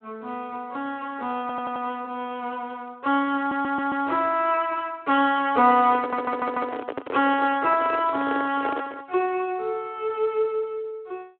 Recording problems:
telephone audio; 240 Hz to 3.4 kHz, Speex
stutter; at 1.5 s, at 3.5 s and at 6 s
handling noise; from 6 to 9 s; peak -1 dB vs average level

